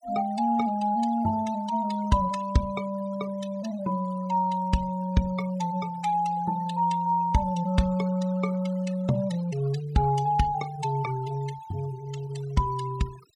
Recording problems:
denoising artefacts; signal-to-artefact ratio 19 dB

